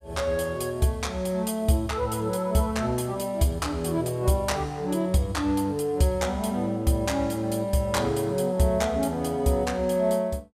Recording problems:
none

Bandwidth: 15 kHz